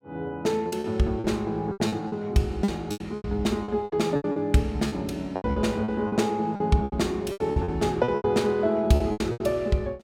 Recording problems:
packet loss; 16% of the sound replaced, filled with repeated pitch periods

